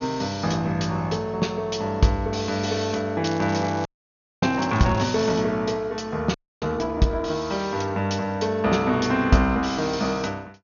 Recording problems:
treble cut off; nothing above 6.5 kHz
crackle; from 3 to 5 s; loose cable, SNR 19 dB
audio freezing; at 4 s for 0.5 s and at 6.5 s

